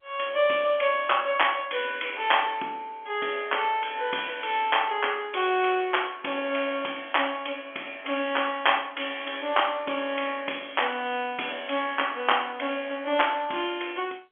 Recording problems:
telephone audio; 220 Hz to 3.4 kHz, G.711

